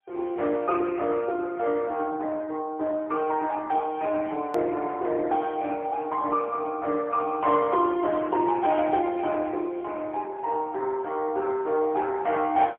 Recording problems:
phone line; 260 Hz to 2.3 kHz, AMR-NB, then MP3
edit click; at 4.5 s

